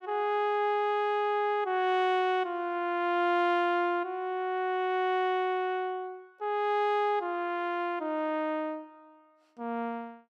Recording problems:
none

